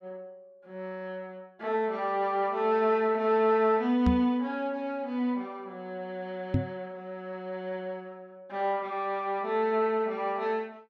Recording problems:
microphone thump; at 4 s and at 6.5 s; peak +6 dB vs average level

